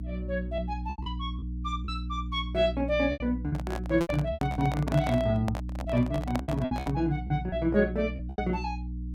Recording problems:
hum; 60 Hz, harmonics up to 300 Hz, SNR 6 dB
packet loss; 11% of the sound replaced, filled with repeated pitch periods
microphone handling noise; from 3.5 to 7 s; peak +1 dB vs average level

